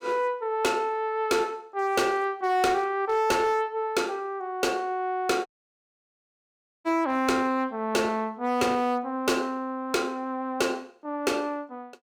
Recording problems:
distortion; hard clipping, signal-to-distortion ratio 11 dB
dropout; at 5.5 s for 1.5 s

